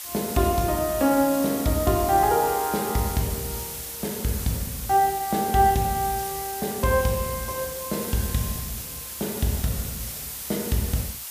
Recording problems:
hiss; SNR 7 dB

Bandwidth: 15 kHz